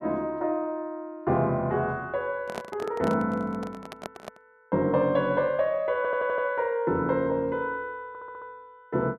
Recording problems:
microphone handling noise; from 2.5 to 4.5 s; peak -4 dB vs average level
stutter; at 6 s and at 8 s

